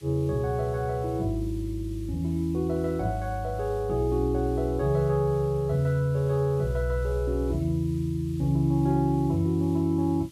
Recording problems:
hiss; SNR 27 dB

